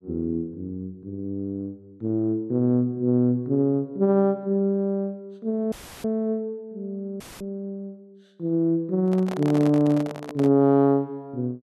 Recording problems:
dropout; at 5.5 s and at 7 s; filled with static
handling noise; from 9 to 10 s; peak -6 dB vs average level

